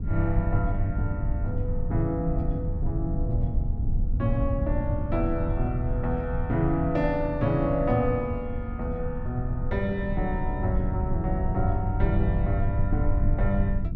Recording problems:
rumble; below 98 Hz, SNR 1 dB

